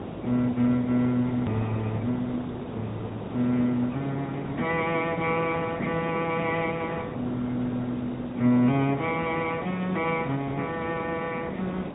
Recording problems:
treble cut off; nothing above 3.3 kHz
lossy compression; Opus, log-spectral distance 4 dB
hiss; SNR 8 dB
edit click; at 1.5 s

